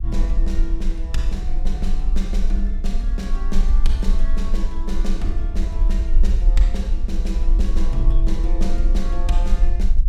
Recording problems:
rumble; below 40 Hz, strongest tone 24 Hz, SNR -8 dB

